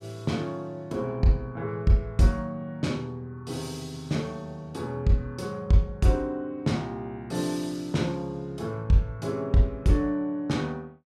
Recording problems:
none

